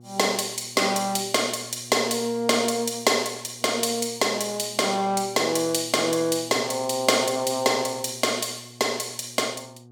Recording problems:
mains hum; 60 Hz, harmonics up to 840 Hz, SNR 23 dB

